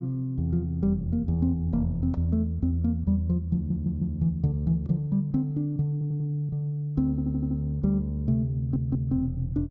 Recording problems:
low-pass filter; nothing above 8 kHz
audio stuttering; 4 times, first at 3.5 s

